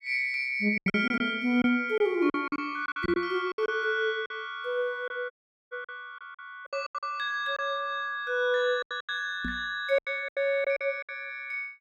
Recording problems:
packet loss; 11% of the sound replaced, filled with silence
knock on the microphone; at 3 s and at 9.5 s; peak -3 dB vs average level
audio cutting out; at 5.5 s

